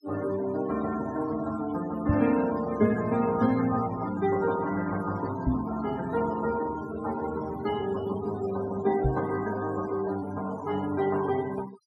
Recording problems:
noise reduction artefacts; signal-to-artefact ratio 15 dB
knock on the microphone; at 2 s, at 5.5 s and at 9 s; peak +6 dB vs average level

